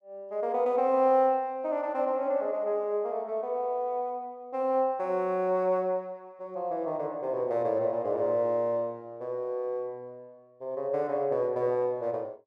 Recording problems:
none

